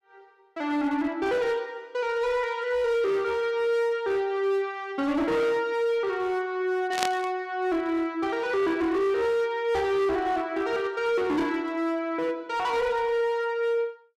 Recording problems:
distortion; hard clipping, signal-to-distortion ratio 11 dB
static burst; at 7 s; peak +3 dB vs average level

